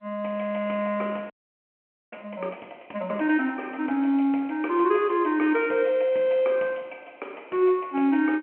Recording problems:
phone line; 240 Hz to 3.1 kHz, G.711
frozen audio; at 1.5 s for 1 s

